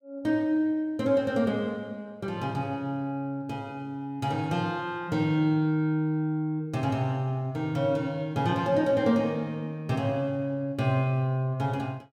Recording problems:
none

